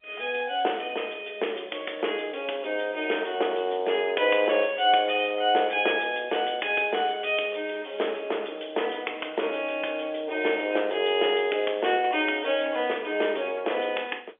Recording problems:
phone line; 320 Hz to 3.4 kHz, G.711

